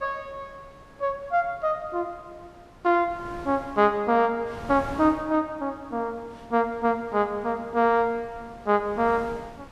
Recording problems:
wind on the microphone; below 920 Hz, SNR 20 dB

